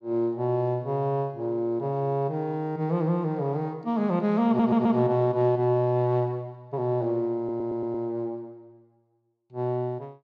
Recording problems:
stutter; at 4.5 s and at 7.5 s

